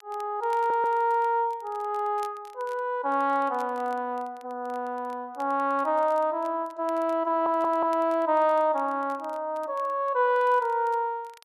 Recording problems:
crackle; vinyl, SNR 30 dB
audio stuttering; at 0.5 s and at 7.5 s

